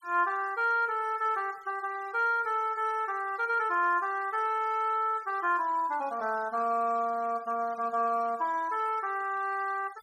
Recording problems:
denoising artefacts; signal-to-artefact ratio 26 dB

